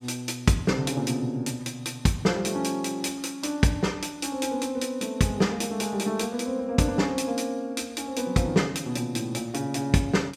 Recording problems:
none

